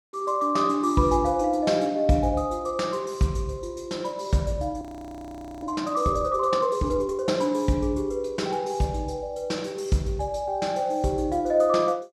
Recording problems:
audio freezing; at 5 s for 1 s

